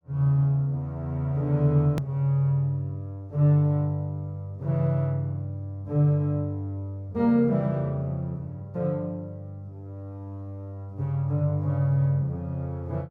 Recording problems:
hard cut with a click; at 2 s

